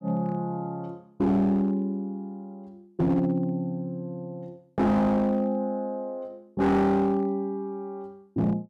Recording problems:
distortion; hard clipping, signal-to-distortion ratio 10 dB

